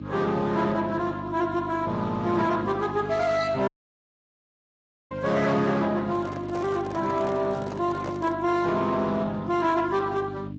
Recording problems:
codec artefacts; Speex, then Vorbis, log-spectral distance 3 dB, nothing above 7.3 kHz
distorted audio; soft clipping, signal-to-distortion ratio 12 dB
hum; 50 Hz, harmonics up to 400 Hz, SNR 11 dB
dropout; at 3.5 s for 1.5 s
handling noise; from 6 to 8.5 s; peak -4 dB vs average level

